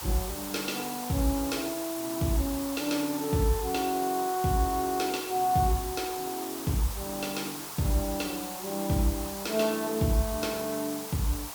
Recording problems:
background hiss; SNR 7 dB

